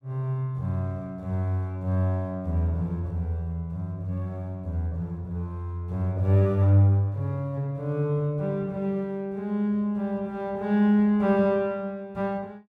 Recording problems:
none

